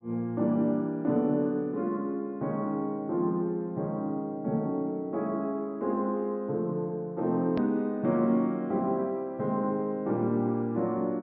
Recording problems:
treble missing; nothing above 5.5 kHz
click at an edit; at 7.5 s

